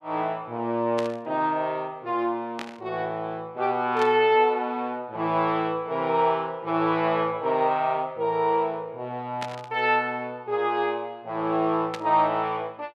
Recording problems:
static burst; 5 times, first at 1 s; peak -5 dB vs average level

